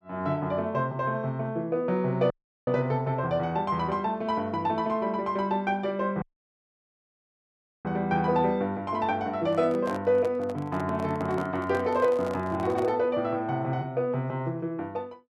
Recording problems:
dropout; at 2.5 s and at 6 s for 1.5 s
microphone handling noise; from 9.5 to 13 s; peak -5 dB vs average level

